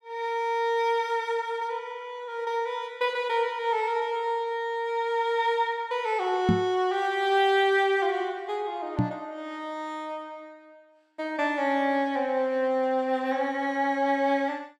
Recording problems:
microphone bump; at 6.5 s and at 9 s; peak +7 dB vs average level

